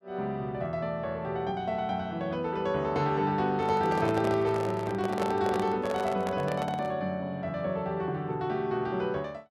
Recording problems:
handling noise; from 3.5 to 7 s; peak +1 dB vs average level

